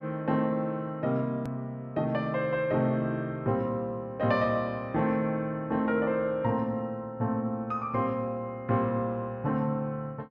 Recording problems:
edit click; at 1.5 s

